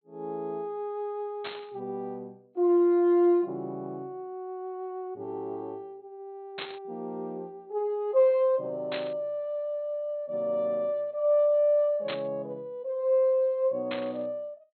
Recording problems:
treble cut off; nothing above 4.2 kHz
burst of static; 5 times, first at 1.5 s; peak -4 dB vs average level

